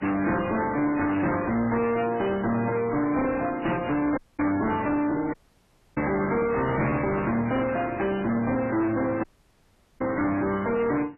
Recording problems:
lossy codec; MP3, then AAC, log-spectral distance 4 dB, nothing above 2.6 kHz
distortion; hard clipping, uneven, signal-to-distortion ratio 6 dB
audio cutting out; at 4 s, at 5.5 s for 0.5 s and at 9 s for 1 s
burst of static; at 7 s and at 10 s; peak -17 dB vs average level

